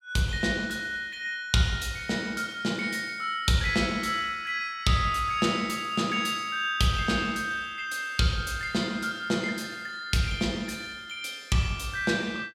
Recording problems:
none

